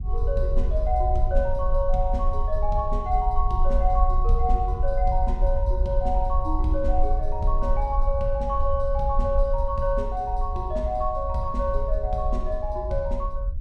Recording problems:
rumble; below 52 Hz, SNR 0 dB

